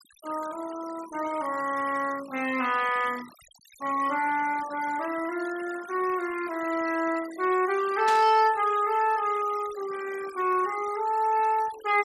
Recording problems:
denoising artefacts; signal-to-artefact ratio 17 dB
static burst; at 8 s; peak -3 dB vs average level

